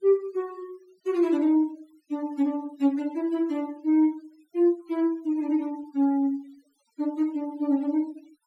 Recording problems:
denoising artefacts; signal-to-artefact ratio 27 dB

